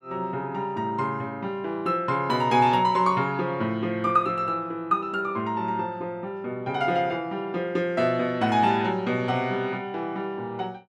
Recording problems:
none

